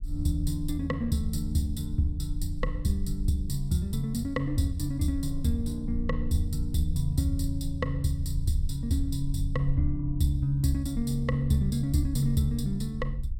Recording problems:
rumble; below 48 Hz, SNR 9 dB

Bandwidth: 16 kHz